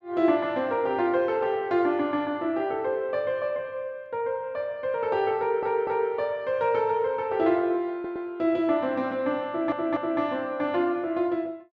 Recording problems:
audio stuttering; at 5.5 s, at 8 s and at 9.5 s

